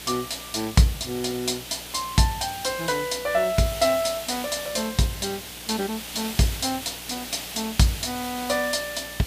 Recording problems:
mains hum; 60 Hz, harmonics up to 540 Hz, SNR 23 dB
hiss; SNR 9 dB

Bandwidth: 15 kHz